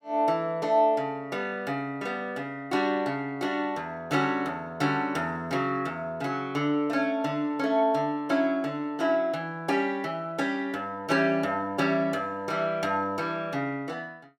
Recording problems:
none

